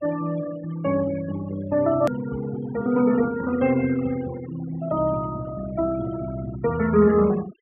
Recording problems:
treble missing; nothing above 3.3 kHz
denoising artefacts; signal-to-artefact ratio 16 dB
hard cut with a click; at 2 s

